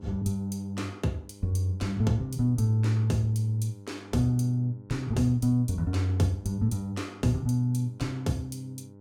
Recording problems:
hum; 50 Hz, harmonics up to 1 kHz, SNR 20 dB

